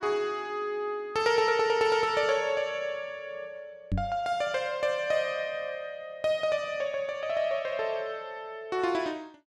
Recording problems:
microphone thump; at 4 s; peak +3 dB vs average level

